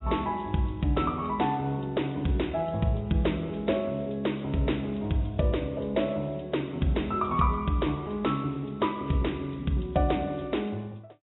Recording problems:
treble missing; nothing above 3.7 kHz
codec artefacts; MP3, log-spectral distance 3 dB

